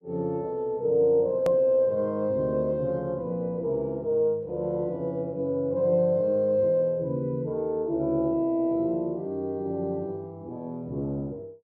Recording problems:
hard cut with a click; at 1.5 s

